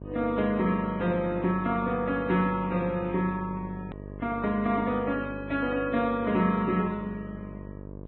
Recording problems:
treble missing; nothing above 3.7 kHz
codec artefacts; Vorbis, log-spectral distance 2 dB
hum; 50 Hz, harmonics up to 1.1 kHz, SNR 13 dB
hard cut with a click; at 4 s

